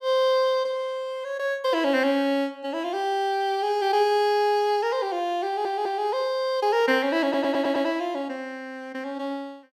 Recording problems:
stutter; at 5.5 s and at 7 s

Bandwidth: 15.5 kHz